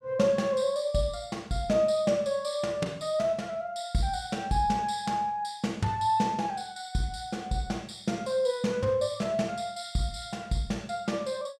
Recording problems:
none

